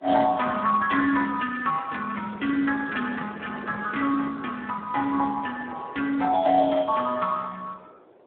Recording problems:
phone line; 300 Hz to 2.9 kHz, Speex
wind on the microphone; below 700 Hz, SNR 21 dB

